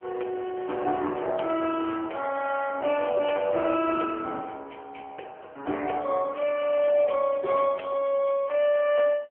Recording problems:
telephone audio; 320 Hz to 3.2 kHz, AMR-NB

